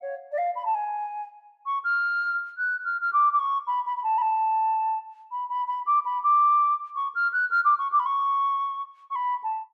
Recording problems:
none

